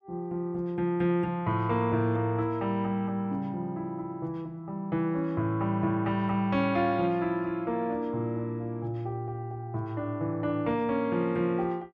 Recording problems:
none

